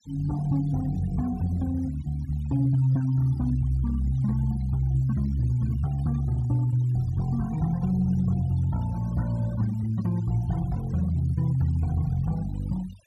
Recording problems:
noise reduction artefacts; signal-to-artefact ratio 23 dB

